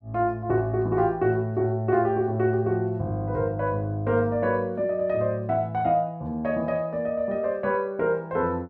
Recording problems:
none

